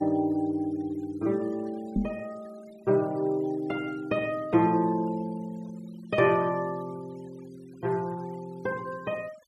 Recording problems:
noise reduction artefacts; signal-to-artefact ratio 25 dB
microphone bump; at 2 s; peak +5 dB vs average level

